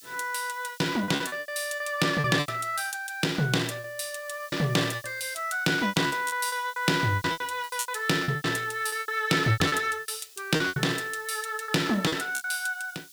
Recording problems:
hiss; SNR 21 dB
packet loss; 16% of the sound replaced, filled with repeated pitch periods

